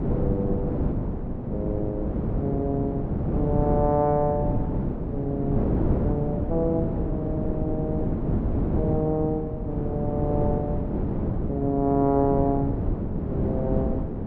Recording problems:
wind noise; below 310 Hz, SNR 0 dB

